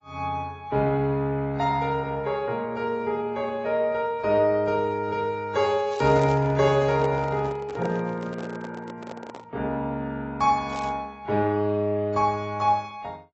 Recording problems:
lossy compression; AAC, log-spectral distance 2 dB, nothing above 6.3 kHz
crackling; at 6 s and at 11 s; loose cable, SNR 22 dB
microphone handling noise; from 6 to 9.5 s; peak -5 dB vs average level

